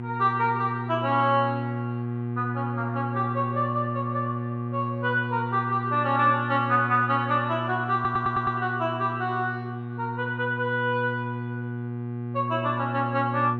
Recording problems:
hum; 60 Hz, harmonics up to 1.2 kHz, SNR 6 dB
audio stuttering; at 8 s

